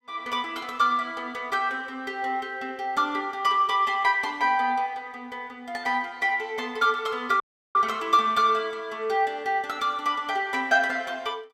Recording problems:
dropout; at 7.5 s

